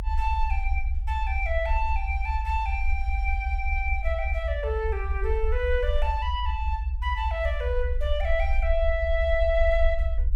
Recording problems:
low-frequency rumble; below 66 Hz, SNR 0 dB

